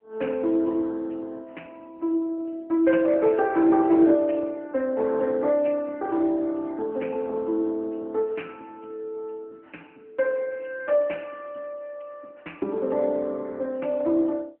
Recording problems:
telephone audio; 220 Hz to 3.7 kHz, AMR-NB

